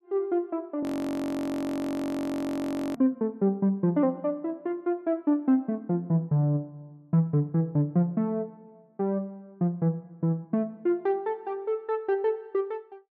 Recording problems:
audio freezing; at 1 s for 2 s

